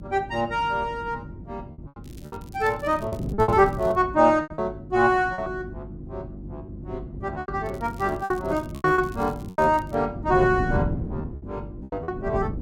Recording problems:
electrical hum; 50 Hz, harmonics up to 350 Hz, SNR 17 dB
wind on the microphone; below 230 Hz, SNR 12 dB
packet loss; 9% of the sound replaced, filled with repeated pitch periods
crackle; from 2 to 4 s and from 7.5 to 10 s; loose cable, SNR 28 dB

